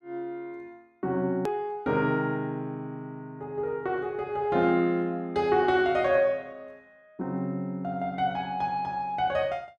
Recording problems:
hard cut with a click; at 1.5 s

